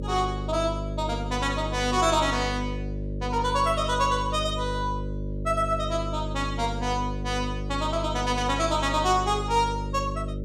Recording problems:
electrical hum; 50 Hz, harmonics up to 600 Hz, SNR 6 dB

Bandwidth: 15 kHz